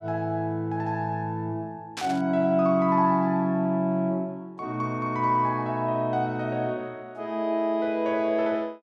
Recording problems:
burst of static; at 2 s; peak -4 dB vs average level

